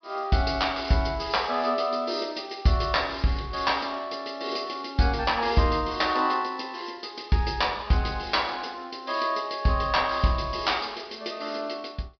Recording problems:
treble cut off; nothing above 5.5 kHz

